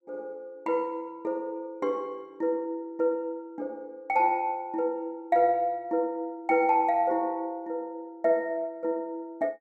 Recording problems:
none

